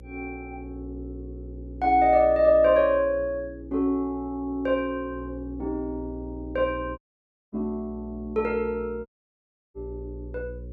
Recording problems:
electrical hum; 60 Hz, harmonics up to 540 Hz, SNR 17 dB
dropout; at 7 s for 0.5 s and at 9 s for 0.5 s

